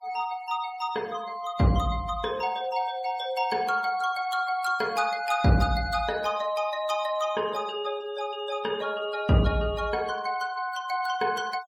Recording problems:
denoising artefacts; signal-to-artefact ratio 22 dB

